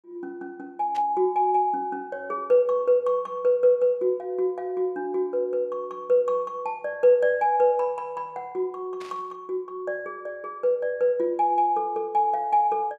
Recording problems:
burst of static; at 1 s and at 9 s; peak -14 dB vs average level

